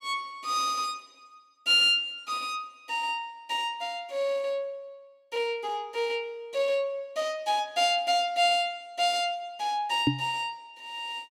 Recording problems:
knock on the microphone; at 10 s; peak +7 dB vs average level

